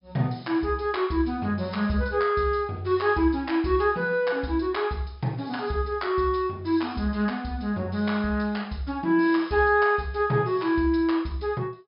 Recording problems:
treble cut off; nothing above 5.5 kHz

